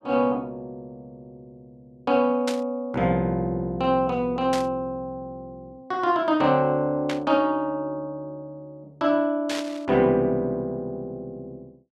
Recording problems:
static burst; 4 times, first at 2.5 s; peak -2 dB vs average level

